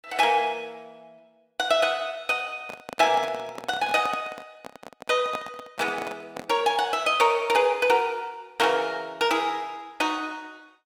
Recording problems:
handling noise; from 2.5 to 6.5 s; peak -6 dB vs average level

